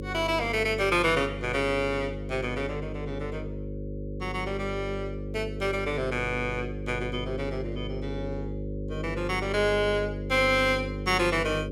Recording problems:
hum; 50 Hz, harmonics up to 550 Hz, SNR 7 dB

